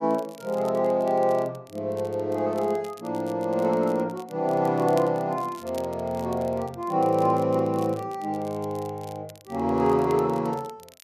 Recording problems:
crackling; vinyl, SNR 25 dB

